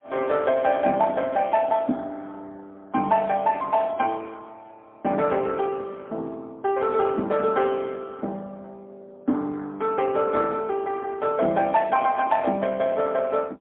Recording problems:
telephone audio; 190 Hz to 3.5 kHz, AMR-NB, then MP3

